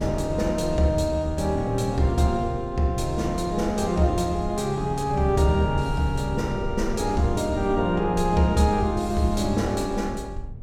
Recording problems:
rumble; below 90 Hz, SNR 12 dB

